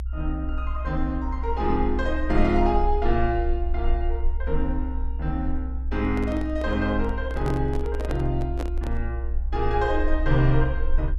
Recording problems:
low-frequency rumble; below 62 Hz, SNR 2 dB
handling noise; from 6 to 9 s; peak -2 dB vs average level

